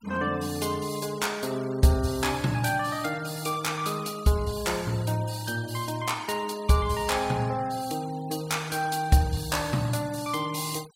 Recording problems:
denoising artefacts; signal-to-artefact ratio 19 dB

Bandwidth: 16.5 kHz